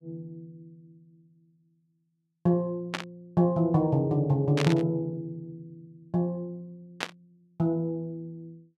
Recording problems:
burst of static; at 3 s, at 4.5 s and at 7 s; peak +2 dB vs average level

